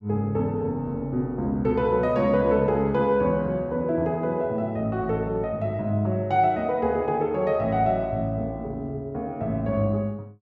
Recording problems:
none

